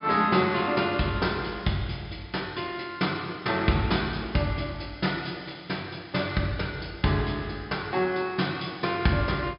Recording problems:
treble missing; nothing above 5.5 kHz

